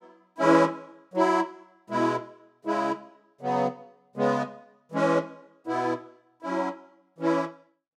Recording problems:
none

